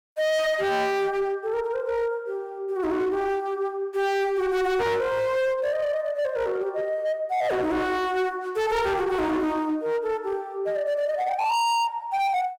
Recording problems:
distorted audio; hard clipping, signal-to-distortion ratio 6 dB

